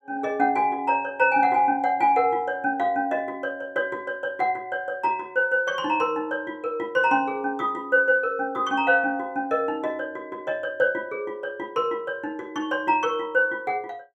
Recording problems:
none

